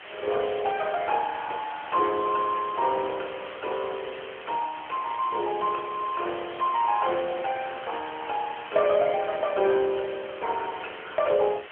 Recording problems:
phone line; 340 Hz to 3.1 kHz, AMR-NB
hiss; SNR 14 dB

